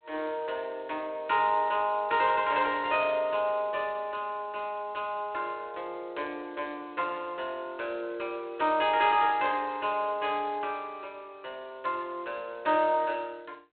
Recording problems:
telephone audio; 280 Hz to 3.5 kHz, G.726

